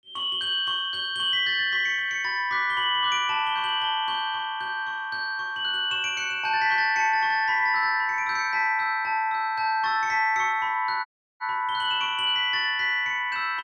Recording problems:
audio cutting out; at 11 s

